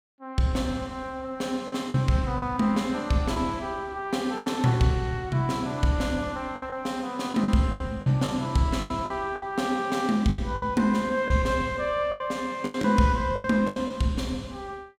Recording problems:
lost packets; 8% of the sound replaced, filled with the last packet

